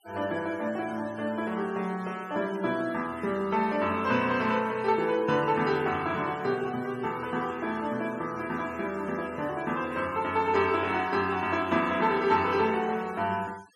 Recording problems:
denoising artefacts; signal-to-artefact ratio 21 dB

